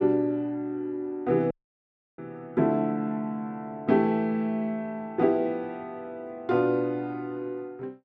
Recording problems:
dropout; at 1.5 s for 0.5 s

